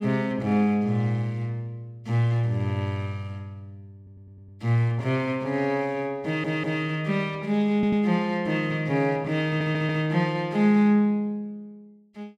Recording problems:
stutter; 4 times, first at 4 s

